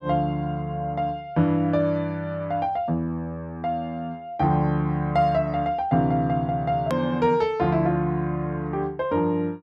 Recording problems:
edit click; at 7 s

